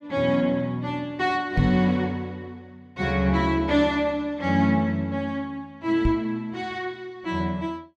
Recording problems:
microphone bump; at 1.5 s and at 6 s; peak +5 dB vs average level

